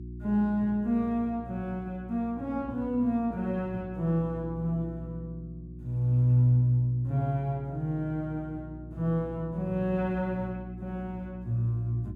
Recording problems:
hum; 60 Hz, harmonics up to 360 Hz, SNR 14 dB

